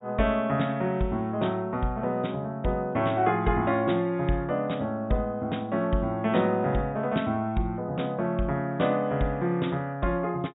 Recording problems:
low-pass filter; nothing above 4 kHz

